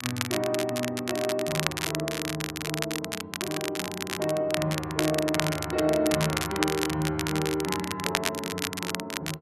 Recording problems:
crackling; vinyl, SNR 2 dB

